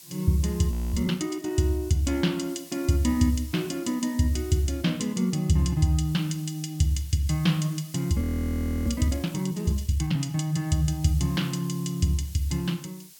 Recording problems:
hiss; SNR 20 dB
audio freezing; at 0.5 s and at 8 s for 0.5 s

